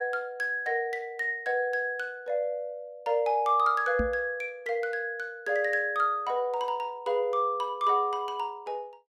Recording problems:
knock on the microphone; at 4 s; peak +1 dB vs average level

